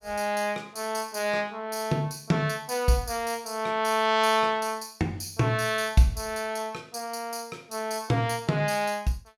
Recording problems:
none

